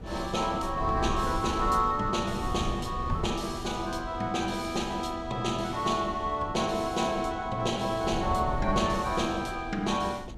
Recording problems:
wind on the microphone; below 170 Hz, SNR 10 dB

